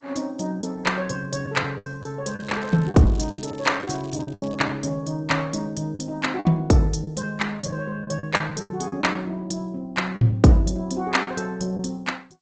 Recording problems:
lossy compression; Opus, then G.722, log-spectral distance 5 dB, nothing above 7.8 kHz
lost packets; 9% of the sound replaced, filled with the last packet
crackle; from 2.5 to 4.5 s; loose cable, SNR 25 dB

